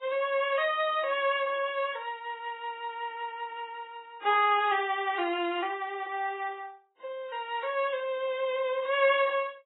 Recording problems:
codec artefacts; Vorbis, then AAC, log-spectral distance 3 dB, nothing above 3.4 kHz

